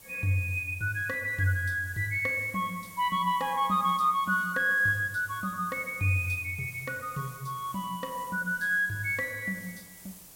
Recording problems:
hiss; SNR 19 dB

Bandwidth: 16.5 kHz